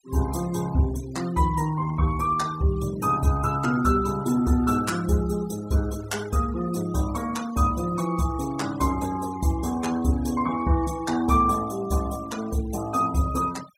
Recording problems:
noise reduction artefacts; signal-to-artefact ratio 18 dB

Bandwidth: 16.5 kHz